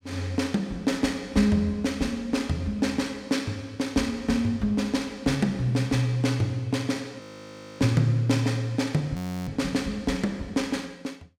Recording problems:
frozen audio; at 7 s for 0.5 s and at 9 s

